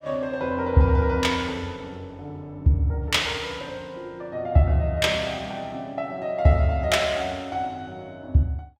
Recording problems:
none

